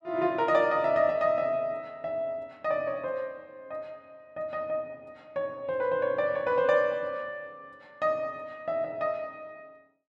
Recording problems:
none

